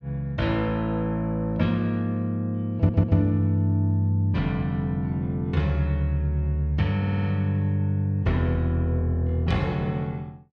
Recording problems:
stutter; at 3 s and at 7 s

